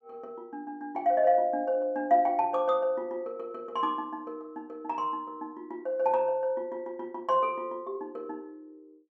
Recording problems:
none

